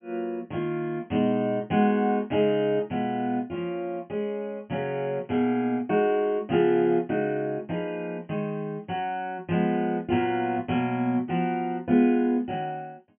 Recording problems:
treble missing; nothing above 3.2 kHz

